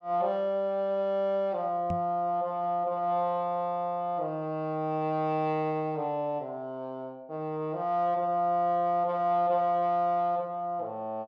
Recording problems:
knock on the microphone; at 2 s; peak -1 dB vs average level

